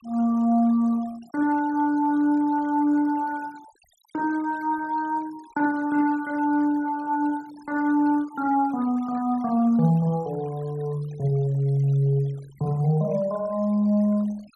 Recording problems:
noise reduction artefacts; signal-to-artefact ratio 26 dB

